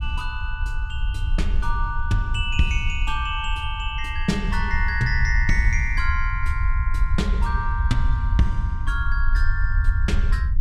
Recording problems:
rumble; below 64 Hz, SNR -1 dB

